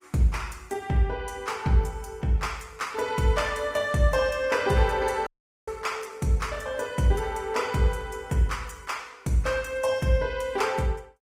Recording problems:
codec artefacts; Opus, log-spectral distance 4 dB
dropout; at 5.5 s

